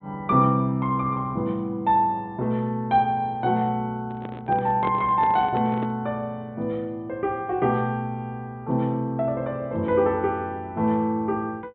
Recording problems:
treble cut off; nothing above 4 kHz
microphone handling noise; from 4 to 6 s; peak -4 dB vs average level

